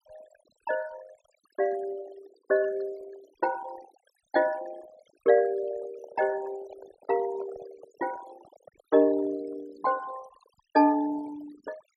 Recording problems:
denoising artefacts; signal-to-artefact ratio 19 dB
microphone handling noise; from 5.5 to 9.5 s; peak -11 dB vs average level

